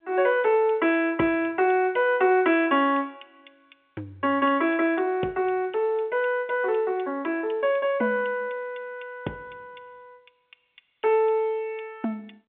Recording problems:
phone line; 280 Hz to 3.3 kHz, G.711

